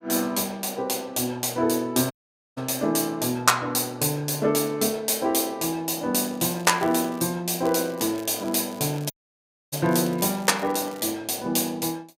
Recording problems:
audio cutting out; at 2 s and at 9 s for 0.5 s
crackle; from 6 to 7 s and from 7.5 to 11 s; loose cable, SNR 22 dB

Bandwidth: 15.5 kHz